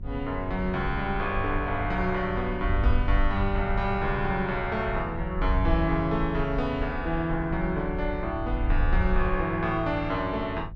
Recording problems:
electrical hum; 50 Hz, harmonics up to 400 Hz, SNR 16 dB
wind noise; below 62 Hz, SNR 5 dB

